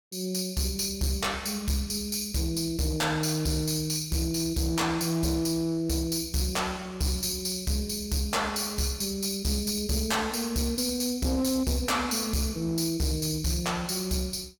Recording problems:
distorted audio; hard clipping, signal-to-distortion ratio 11 dB

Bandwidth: 18 kHz